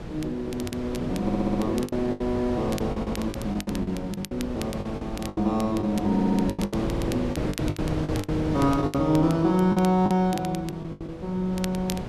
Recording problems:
wind noise; below 480 Hz, SNR 7 dB
crackling; vinyl, SNR 16 dB
packet loss; 15% of the sound replaced, filled with the last packet
audio stuttering; 4 times, first at 1 s

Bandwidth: 13 kHz